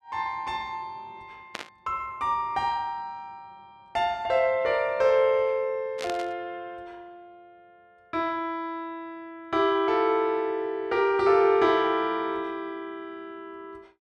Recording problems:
static burst; at 1.5 s and at 6 s; peak -4 dB vs average level

